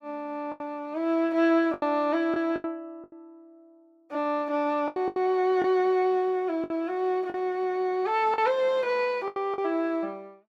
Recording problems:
lost packets; 8% of the sound replaced, filled with the last packet

